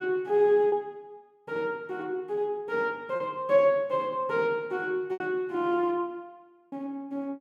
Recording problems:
lost packets; 3% of the sound replaced, filled with repeated pitch periods

